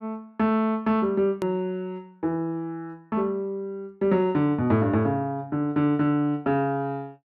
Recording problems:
edit click; at 1.5 s

